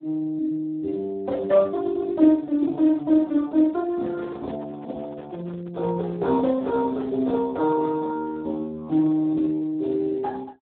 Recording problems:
phone line; 170 Hz to 2.3 kHz, Speex
microphone handling noise; from 4 to 7.5 s; peak -11 dB vs average level

